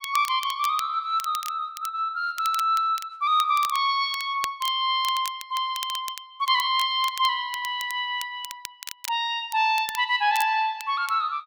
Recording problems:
crackle; vinyl, SNR 15 dB

